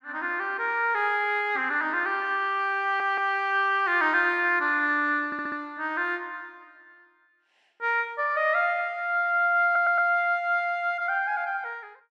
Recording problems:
stutter; at 3 s, at 5.5 s and at 9.5 s

